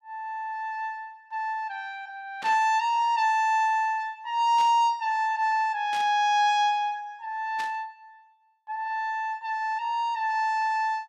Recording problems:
burst of static; 4 times, first at 2.5 s; peak -9 dB vs average level

